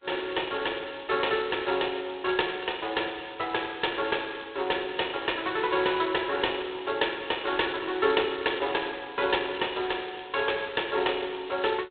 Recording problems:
telephone audio; 320 Hz to 3.9 kHz, G.726

